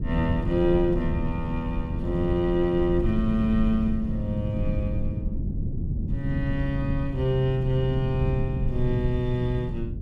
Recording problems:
low-frequency rumble; below 150 Hz, SNR 4 dB

